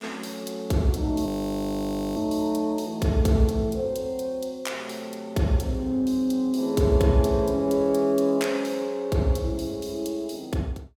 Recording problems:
frozen audio; at 1.5 s for 1 s

